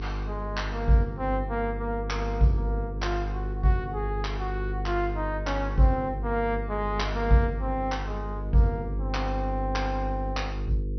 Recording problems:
low-pass filter; nothing above 6 kHz
hum; 50 Hz, harmonics up to 500 Hz, SNR 4 dB

